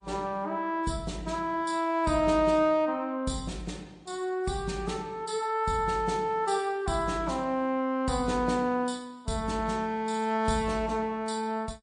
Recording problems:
codec artefacts; MP3, log-spectral distance 3 dB, nothing above 9.5 kHz

